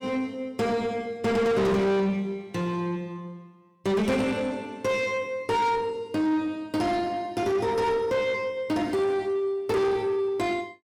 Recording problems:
distortion; soft clipping, signal-to-distortion ratio 8 dB

